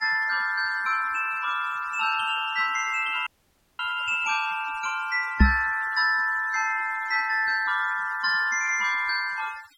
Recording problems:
denoising artefacts; signal-to-artefact ratio 20 dB
dropout; at 3.5 s for 0.5 s
microphone thump; at 5.5 s; peak +10 dB vs average level

